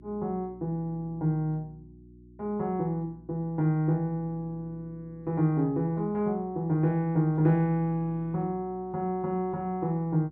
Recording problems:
hum; 60 Hz, harmonics up to 360 Hz, SNR 23 dB

